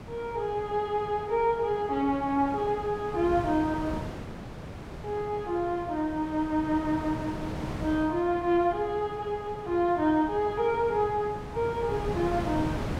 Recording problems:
wind on the microphone; below 610 Hz, SNR 11 dB

